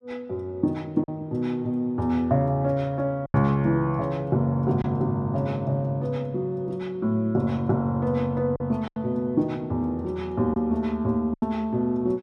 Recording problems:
packet loss; 3% of the sound replaced, filled with silence

